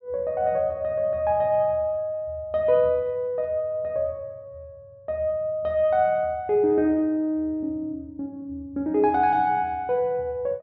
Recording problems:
none

